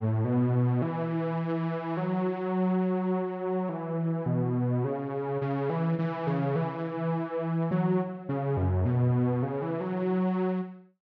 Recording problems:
none

